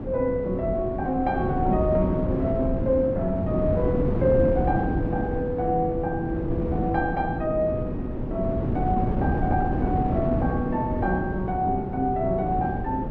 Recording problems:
wind noise; below 310 Hz, SNR 2 dB

